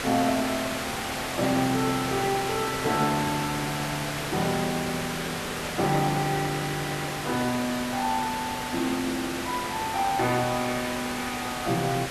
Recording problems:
background hiss; slope -3 dB per octave, SNR 3 dB

